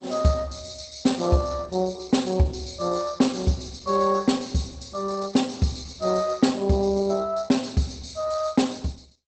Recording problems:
lossy compression; Opus, log-spectral distance 6 dB, nothing above 8 kHz

